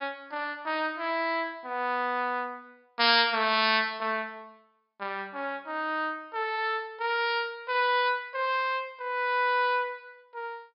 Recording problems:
treble cut off; nothing above 5.5 kHz

